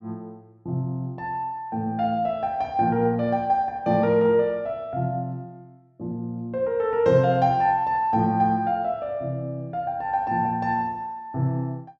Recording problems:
none

